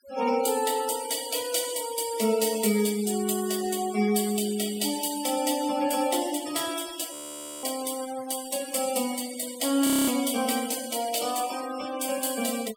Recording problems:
noise reduction artefacts; signal-to-artefact ratio 13 dB
frozen audio; at 7 s for 0.5 s and at 10 s

